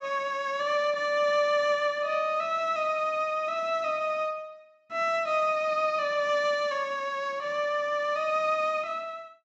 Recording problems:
none

